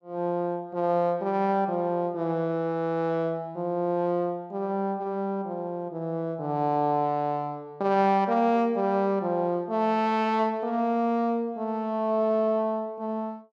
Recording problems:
none

